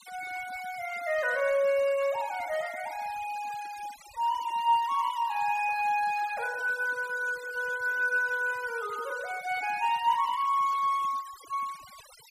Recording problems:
noise reduction artefacts; signal-to-artefact ratio 18 dB

